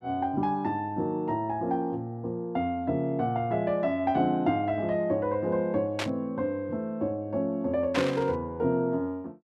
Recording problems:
burst of static; at 6 s and at 8 s; peak +1 dB vs average level

